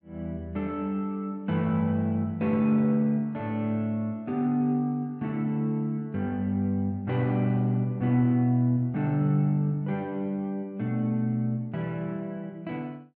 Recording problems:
none

